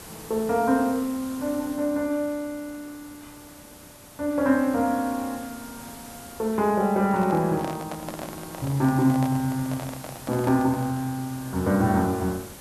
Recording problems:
background hiss; slope -3 dB per octave, SNR 17 dB
handling noise; from 7 to 11 s; peak -6 dB vs average level

